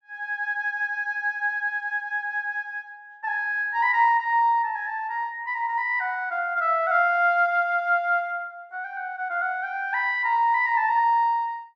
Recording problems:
none

